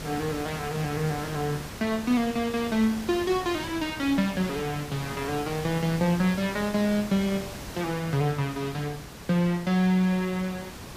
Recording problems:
background hiss; slope -3 dB per octave, SNR 11 dB

